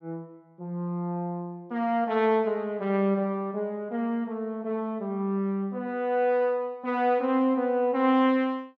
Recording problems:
none

